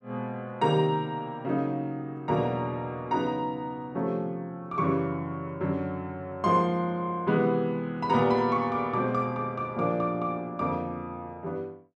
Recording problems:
none

